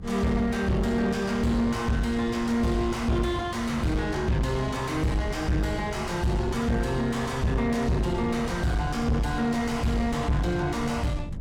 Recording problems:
distorted audio; soft clipping, signal-to-distortion ratio 7 dB
low-frequency rumble; below 140 Hz, SNR 11 dB

